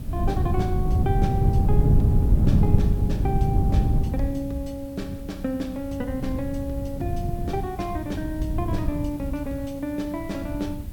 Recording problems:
hiss; slope -2 dB per octave, SNR 20 dB
wind noise; below 140 Hz, SNR -6 dB

